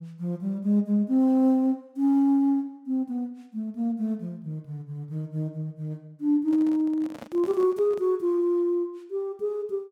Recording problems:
handling noise; from 6.5 to 8 s; peak -11 dB vs average level

